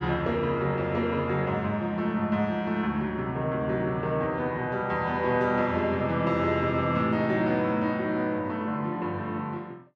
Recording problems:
none

